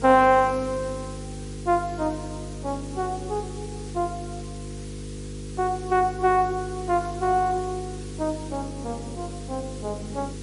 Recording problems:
lossy compression; MP3, log-spectral distance 8 dB
hum; 50 Hz, harmonics up to 500 Hz, SNR 11 dB
hiss; slope +1 dB per octave, SNR 19 dB

